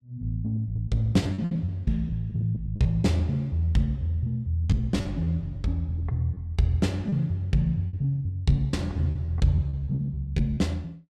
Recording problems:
lost packets; 10% of the sound replaced, filled with repeated pitch periods

